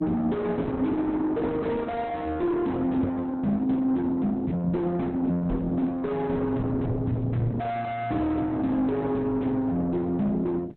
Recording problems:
codec artefacts; Opus, log-spectral distance 2 dB, nothing above 3.8 kHz
distortion; soft clipping, signal-to-distortion ratio 5 dB
knock on the microphone; at 3 s and at 5.5 s; peak +7 dB vs average level

